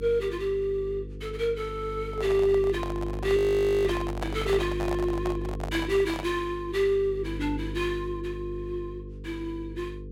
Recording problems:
hum; 50 Hz, harmonics up to 500 Hz, SNR 9 dB
microphone handling noise; from 2 to 6.5 s; peak -2 dB vs average level
audio freezing; at 3.5 s

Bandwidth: 16 kHz